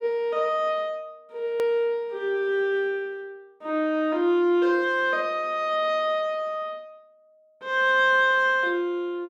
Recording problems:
edit click; at 1.5 s

